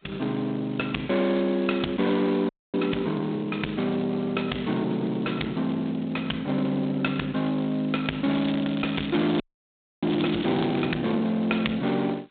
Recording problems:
telephone audio; 170 Hz to 3.8 kHz, G.726
distorted audio; soft clipping, signal-to-distortion ratio 13 dB
frozen audio; at 2.5 s and at 9.5 s for 0.5 s
crackling; from 8.5 to 11 s; loose cable, SNR 13 dB

